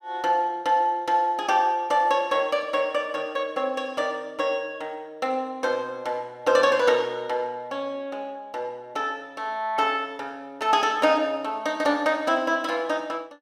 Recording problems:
none

